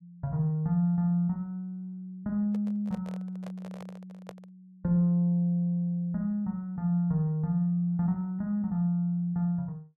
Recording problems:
microphone handling noise; from 2.5 to 4.5 s; peak -10 dB vs average level

